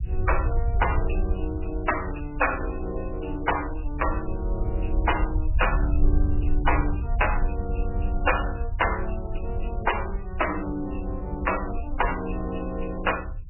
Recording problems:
lossy codec; MP3, log-spectral distance 5 dB, nothing above 2.9 kHz
rumble; below 68 Hz, SNR 2 dB

